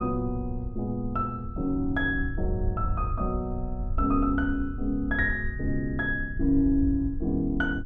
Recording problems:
low-frequency rumble; below 80 Hz, SNR 6 dB

